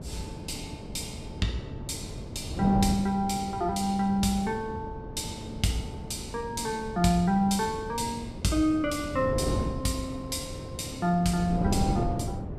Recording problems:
wind on the microphone; below 320 Hz, SNR 7 dB

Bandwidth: 15 kHz